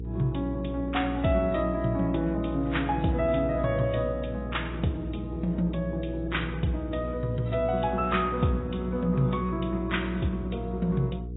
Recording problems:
codec artefacts; AAC, log-spectral distance 3 dB, nothing above 3.8 kHz
hum; 60 Hz, harmonics up to 480 Hz, SNR 8 dB

